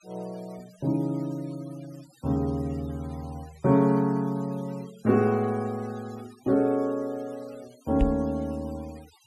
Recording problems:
noise reduction artefacts; signal-to-artefact ratio 26 dB
knock on the microphone; at 8 s; peak +5 dB vs average level

